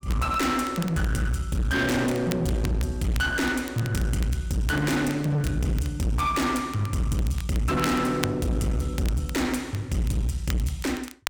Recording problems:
distorted audio; hard clipping, uneven, signal-to-distortion ratio 6 dB
crackling; vinyl, SNR 16 dB

